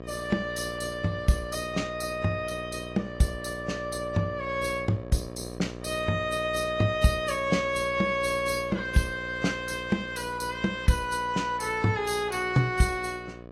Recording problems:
lossy compression; AAC, log-spectral distance 3 dB, nothing above 14.3 kHz
electrical hum; 60 Hz, harmonics up to 1.8 kHz, SNR 13 dB

